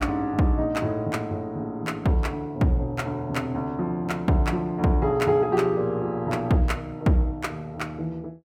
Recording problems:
none

